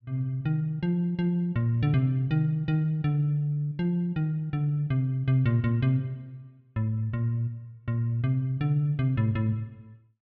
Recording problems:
none

